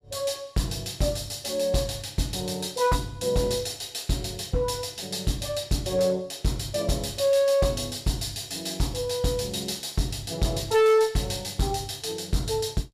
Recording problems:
distortion; hard clipping, signal-to-distortion ratio 8 dB

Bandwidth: 15 kHz